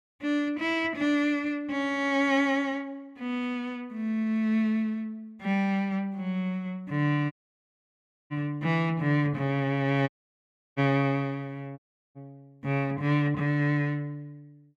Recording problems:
dropout; at 7.5 s for 1 s, at 10 s for 0.5 s and at 12 s

